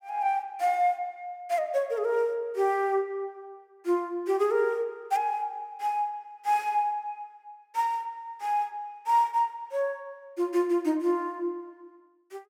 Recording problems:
none

